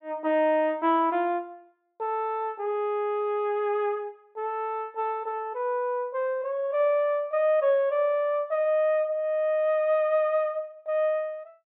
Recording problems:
treble cut off; nothing above 4 kHz

